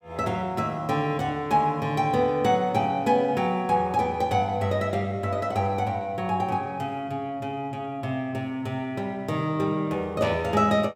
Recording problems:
none

